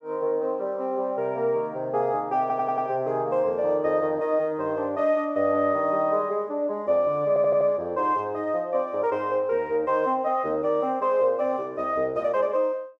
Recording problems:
stutter; at 2.5 s and at 7.5 s

